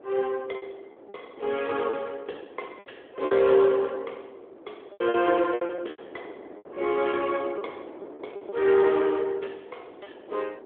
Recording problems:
telephone audio; 300 Hz to 3.5 kHz, AMR-NB
wind noise; below 610 Hz, SNR 19 dB
packet loss; 9% of the sound replaced, filled with repeated pitch periods

